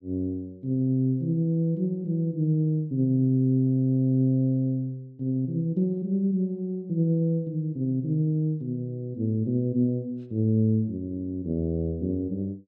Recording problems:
none

